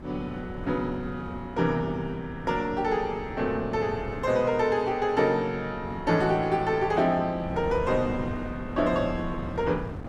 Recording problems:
wind on the microphone; below 350 Hz, SNR 12 dB

